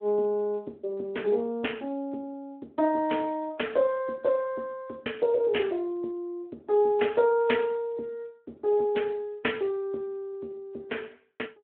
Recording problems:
telephone audio; 280 Hz to 3.2 kHz, Speex

